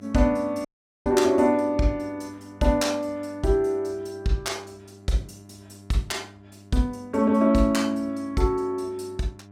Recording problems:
hum; 50 Hz, harmonics up to 1.4 kHz, SNR 23 dB
audio cutting out; at 0.5 s

